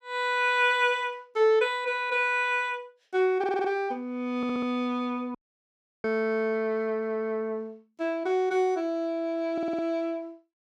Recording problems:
stutter; at 3.5 s, at 4.5 s and at 9.5 s
audio cutting out; at 5.5 s for 0.5 s

